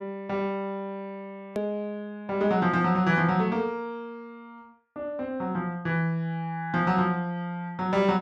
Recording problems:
hard cut with a click; at 1.5 s

